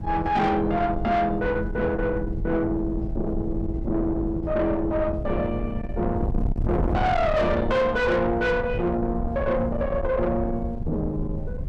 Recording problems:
distortion; soft clipping, signal-to-distortion ratio 7 dB
wind noise; below 260 Hz, SNR 6 dB

